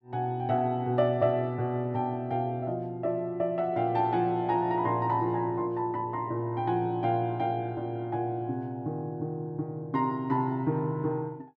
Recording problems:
none

